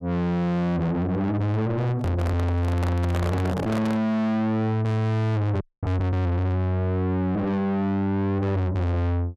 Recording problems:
distortion; soft clipping, signal-to-distortion ratio 6 dB
microphone handling noise; from 2 to 4 s; peak +3 dB vs average level
audio cutting out; at 5.5 s

